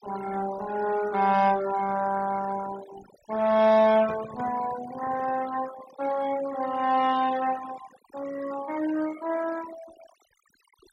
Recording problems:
noise reduction artefacts; signal-to-artefact ratio 15 dB
handling noise; from 4 to 5.5 s; peak -11 dB vs average level

